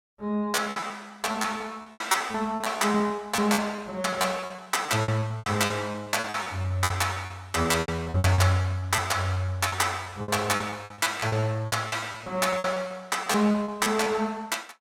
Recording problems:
lost packets; 18% of the sound replaced, filled with repeated pitch periods

